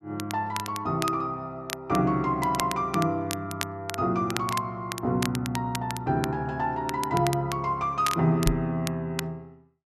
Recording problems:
crackle; vinyl, SNR 10 dB
microphone thump; at 8.5 s; peak +5 dB vs average level

